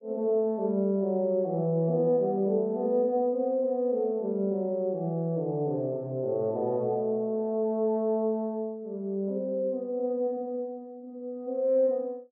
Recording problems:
none

